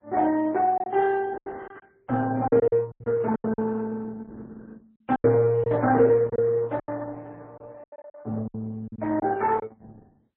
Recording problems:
lossy compression; Opus, then MP3, log-spectral distance 3 dB
lost packets; 11% of the sound replaced, filled with silence

